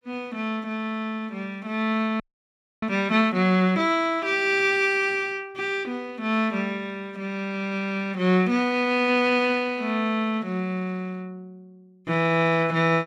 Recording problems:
frozen audio; at 2 s for 0.5 s

